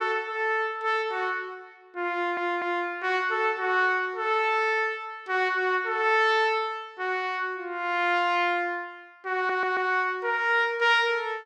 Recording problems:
stutter; at 2 s and at 9.5 s

